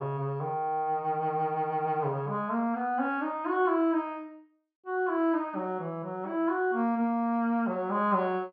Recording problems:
low-pass filter; nothing above 5.5 kHz

